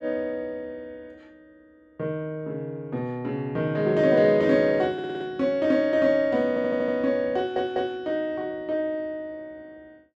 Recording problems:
stutter; at 5 s, at 6.5 s and at 7.5 s

